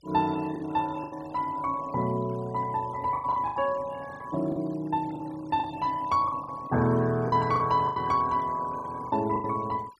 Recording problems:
denoising artefacts; signal-to-artefact ratio 21 dB
packet loss; 9% of the sound replaced, filled with the last packet

